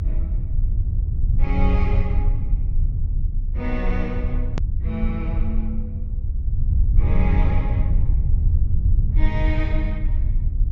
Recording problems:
treble cut off; nothing above 8 kHz
low-frequency rumble; below 78 Hz, SNR -7 dB
hard cut with a click; at 4.5 s

